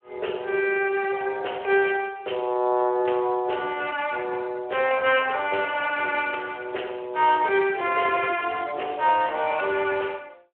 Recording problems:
telephone audio; 320 Hz to 3.2 kHz, Speex

